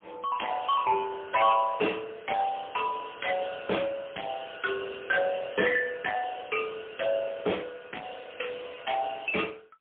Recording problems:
phone line; 300 Hz to 3.3 kHz, AMR-NB, then MP3
distortion; soft clipping, signal-to-distortion ratio 11 dB

